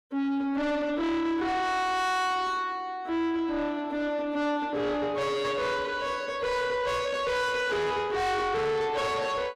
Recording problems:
distorted audio; soft clipping, signal-to-distortion ratio 8 dB

